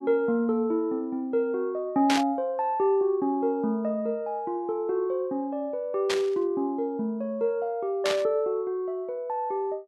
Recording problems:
static burst; at 2 s, at 6 s and at 8 s; peak +3 dB vs average level

